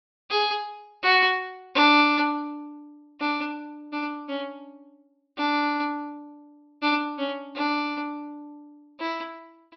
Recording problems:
low-pass filter; nothing above 5.5 kHz

